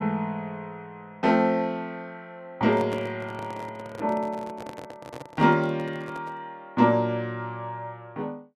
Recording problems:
microphone handling noise; from 2.5 to 6.5 s; peak -5 dB vs average level

